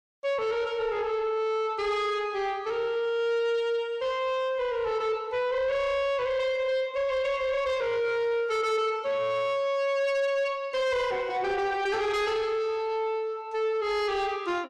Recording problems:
distorted audio; soft clipping, signal-to-distortion ratio 11 dB

